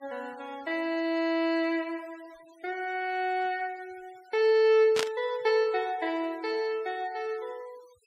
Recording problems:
denoising artefacts; signal-to-artefact ratio 26 dB
static burst; at 5 s; peak +3 dB vs average level

